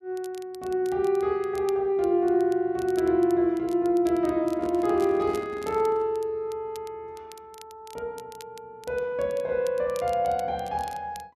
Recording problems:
crackling; vinyl, SNR 25 dB
handling noise; from 4.5 to 6 s; peak -10 dB vs average level

